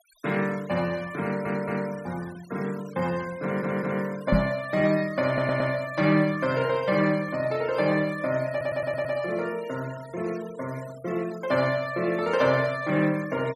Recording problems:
denoising artefacts; signal-to-artefact ratio 20 dB
stutter; 4 times, first at 1 s
microphone bump; at 4.5 s; peak +7 dB vs average level

